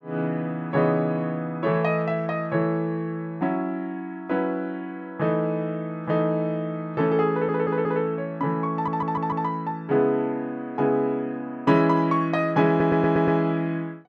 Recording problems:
stutter; at 7.5 s, at 8.5 s and at 13 s

